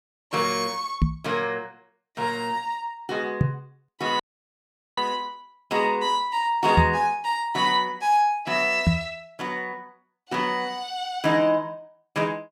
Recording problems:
microphone thump; 4 times, first at 1 s; peak +8 dB vs average level
audio cutting out; at 4 s for 1 s

